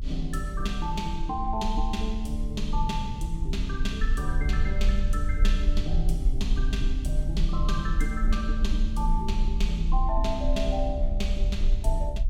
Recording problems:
rumble; below 48 Hz, strongest tone 30 Hz, SNR -3 dB

